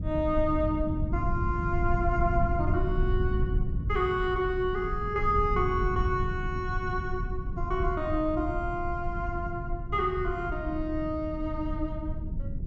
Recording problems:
low-pass filter; nothing above 7.7 kHz
rumble; below 110 Hz, SNR 3 dB

